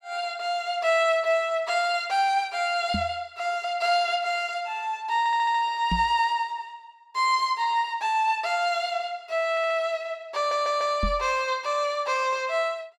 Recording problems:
knock on the microphone; at 3 s, at 6 s and at 11 s; peak 0 dB vs average level
audio stuttering; at 5 s, at 9.5 s and at 10 s

